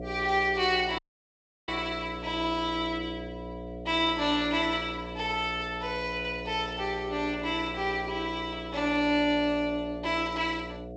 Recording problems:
lossy codec; G.722, log-spectral distance 2 dB, nothing above 7.8 kHz
hum; 60 Hz, harmonics up to 720 Hz, SNR 11 dB
audio cutting out; at 1 s for 0.5 s

